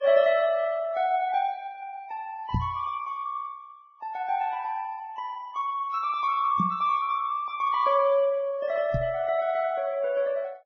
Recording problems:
codec artefacts; Vorbis, then Vorbis, log-spectral distance 2 dB, nothing above 5.7 kHz
microphone bump; at 2.5 s, at 6.5 s and at 9 s; peak +3 dB vs average level

